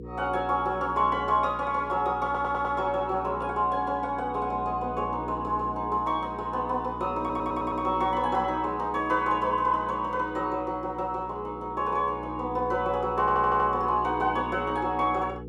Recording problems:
hum; 60 Hz, harmonics up to 480 Hz, SNR 14 dB
stutter; at 2.5 s, at 7 s and at 13 s

